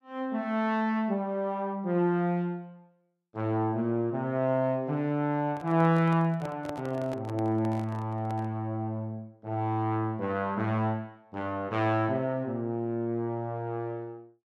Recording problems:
handling noise; from 5.5 to 8.5 s; peak -6 dB vs average level

